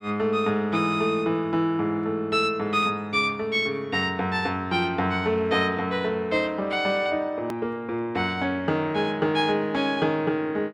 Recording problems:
edit click; at 7.5 s

